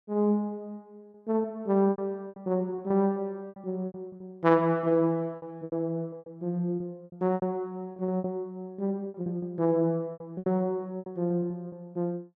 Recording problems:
packet loss; 13% of the sound replaced, filled with repeated pitch periods

